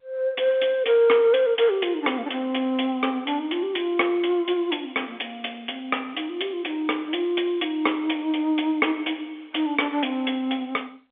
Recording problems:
phone line; 280 Hz to 3.5 kHz, G.711

